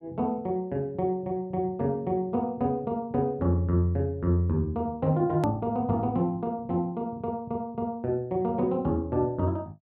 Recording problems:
edit click; at 5.5 s

